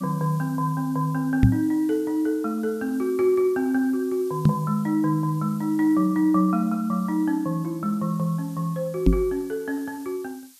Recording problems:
hiss; slope +4 dB per octave, SNR 25 dB
knock on the microphone; at 1.5 s, at 4.5 s and at 9 s; peak +10 dB vs average level

